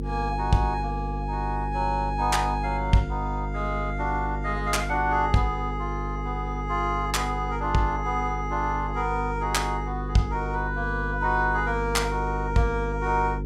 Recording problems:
hum; 50 Hz, harmonics up to 500 Hz, SNR 5 dB

